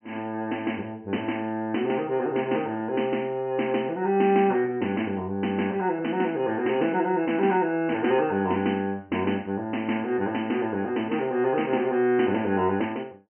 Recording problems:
low-pass filter; nothing above 3.1 kHz

